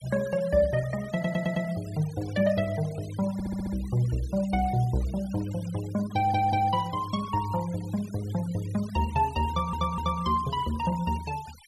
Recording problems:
noise reduction artefacts; signal-to-artefact ratio 19 dB
stutter; 4 times, first at 1 s

